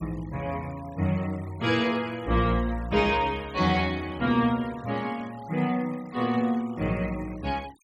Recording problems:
noise reduction artefacts; signal-to-artefact ratio 23 dB

